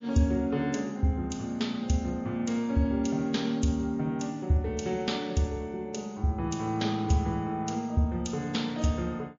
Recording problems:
codec artefacts; MP3, log-spectral distance 2 dB, nothing above 6.5 kHz

